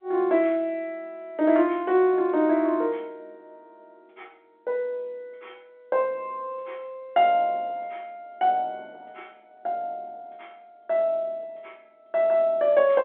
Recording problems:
telephone audio; 260 Hz to 3.5 kHz, G.711

